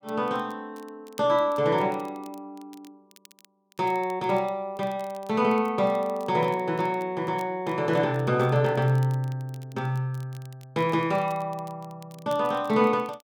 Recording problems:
crackling; vinyl, SNR 28 dB

